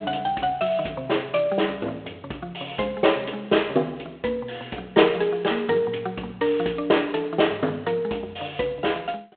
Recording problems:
phone line; 260 Hz to 3.6 kHz, G.726

